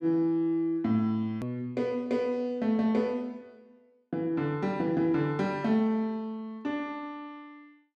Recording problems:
click at an edit; at 1.5 s

